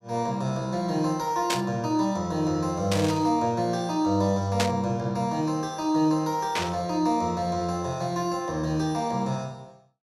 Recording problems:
static burst; 4 times, first at 1.5 s; peak +4 dB vs average level

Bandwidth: 15.5 kHz